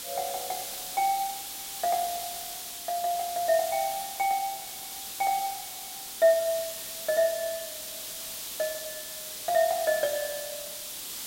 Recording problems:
hiss; SNR 6 dB

